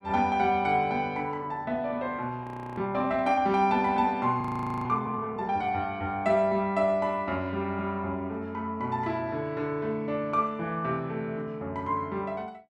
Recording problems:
frozen audio; at 2.5 s and at 4.5 s

